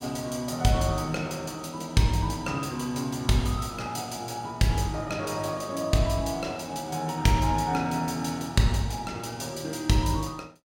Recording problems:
none

